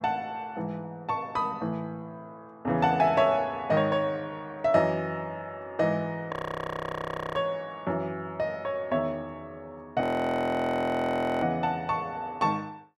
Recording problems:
frozen audio; at 6.5 s for 1 s and at 10 s for 1.5 s

